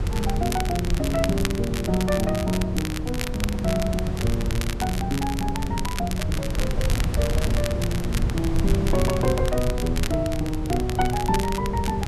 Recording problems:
wind noise; below 130 Hz, SNR 1 dB
crackling; vinyl, SNR 7 dB

